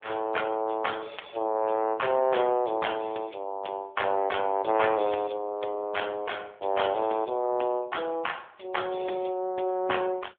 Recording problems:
telephone audio; 300 Hz to 3.4 kHz, AMR-NB

